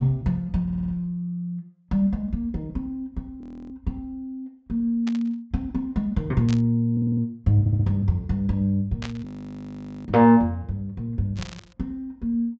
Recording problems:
low-pass filter; nothing above 8 kHz
audio stuttering; at 0.5 s, at 7 s and at 7.5 s
audio freezing; at 3.5 s and at 9.5 s for 1 s
static burst; 4 times, first at 5 s; peak -7 dB vs average level

